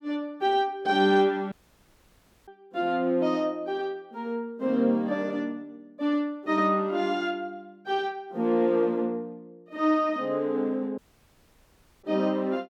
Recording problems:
dropout; at 1.5 s for 1 s and at 11 s for 1 s

